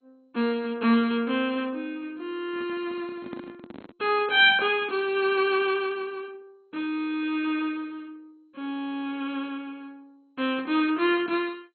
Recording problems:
lossy codec; MP2, log-spectral distance 2 dB, nothing above 3.9 kHz
handling noise; from 2.5 to 4 s; peak -8 dB vs average level

